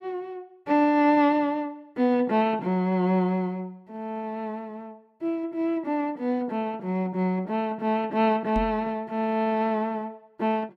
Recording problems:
knock on the microphone; at 8.5 s; peak -3 dB vs average level

